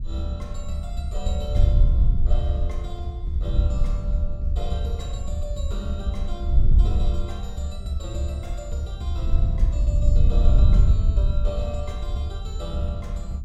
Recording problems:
wind noise; below 68 Hz, SNR -6 dB

